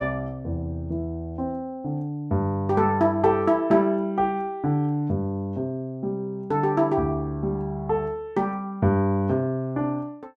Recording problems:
none

